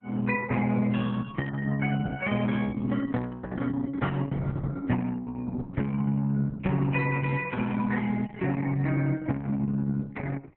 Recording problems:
codec artefacts; Vorbis, then Opus, log-spectral distance 4 dB

